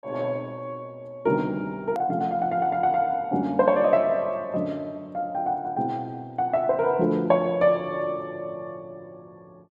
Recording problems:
click at an edit; at 2 s

